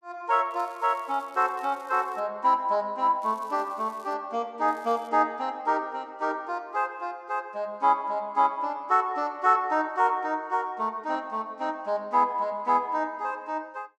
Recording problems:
crackle; from 0.5 to 2 s, at 3 s and at 4.5 s; loose cable, SNR 30 dB

